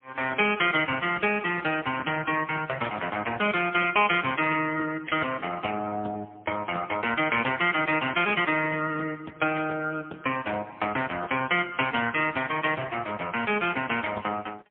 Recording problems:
telephone audio; 300 Hz to 3.3 kHz, AMR-NB, then MP3

